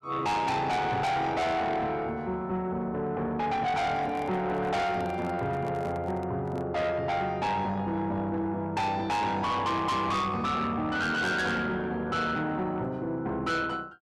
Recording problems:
distortion; soft clipping, signal-to-distortion ratio 7 dB
handling noise; from 3.5 to 7 s; peak -8 dB vs average level

